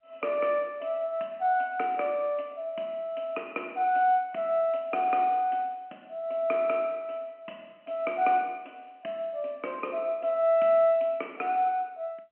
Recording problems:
telephone audio; 220 Hz to 3.3 kHz, G.711

